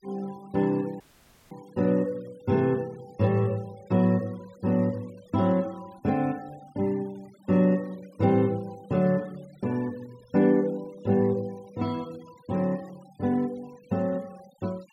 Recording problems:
denoising artefacts; signal-to-artefact ratio 26 dB
dropout; at 1 s for 0.5 s

